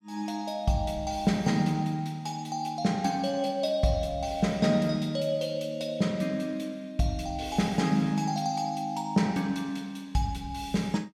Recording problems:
none

